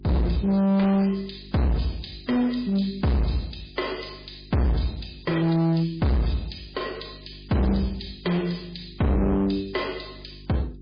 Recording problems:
lossy codec; MP3, log-spectral distance 8 dB, nothing above 11 kHz
distortion; hard clipping, uneven, signal-to-distortion ratio 6 dB
electrical hum; 50 Hz, harmonics up to 400 Hz, SNR 22 dB

